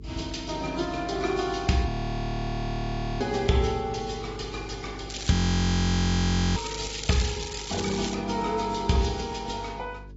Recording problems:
low-pass filter; nothing above 7.6 kHz
codec artefacts; AAC, then Vorbis, log-spectral distance 7 dB
hum; 50 Hz, harmonics up to 450 Hz, SNR 16 dB
frozen audio; at 2 s for 1.5 s and at 5.5 s for 1 s
crackle; from 5 to 8 s; loose cable, SNR 8 dB

